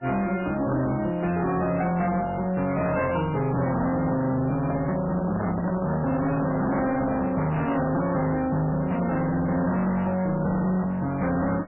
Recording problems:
lossy compression; MP3, log-spectral distance 3 dB, nothing above 2.4 kHz
distortion; hard clipping, uneven, signal-to-distortion ratio 7 dB
handling noise; from 4.5 to 8 s; peak -2 dB vs average level

